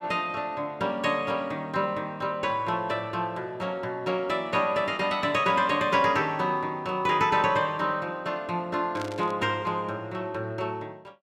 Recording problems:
burst of static; at 9 s; peak -9 dB vs average level

